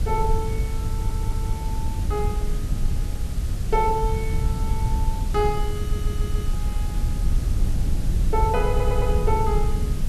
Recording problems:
hiss; slope -3 dB per octave, SNR 12 dB
low-frequency rumble; below 82 Hz, SNR -2 dB
audio stuttering; at 1 s, at 6 s and at 8.5 s

